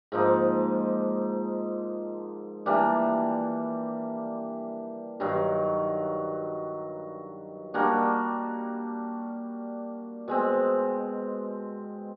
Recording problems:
treble cut off; nothing above 5.5 kHz

